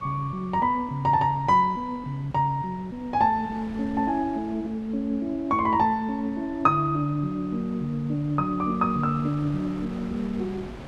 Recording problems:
wind on the microphone; below 750 Hz, SNR 19 dB

